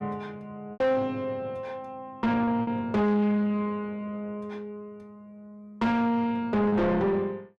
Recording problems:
distortion; soft clipping, signal-to-distortion ratio 7 dB
lost packets; 3% of the sound replaced, filled with repeated pitch periods

